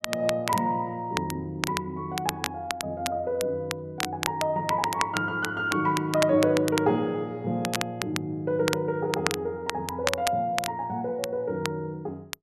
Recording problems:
crackling; vinyl, SNR 6 dB

